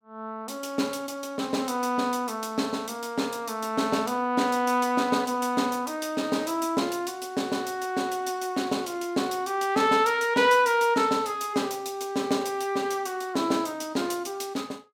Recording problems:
none

